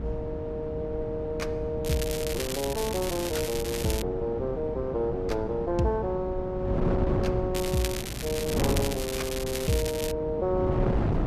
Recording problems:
electrical hum; 60 Hz, harmonics up to 360 Hz, SNR 18 dB
wind on the microphone; below 340 Hz, SNR 3 dB
crackling; from 2 to 4 s and from 7.5 to 10 s; loose cable, SNR 5 dB

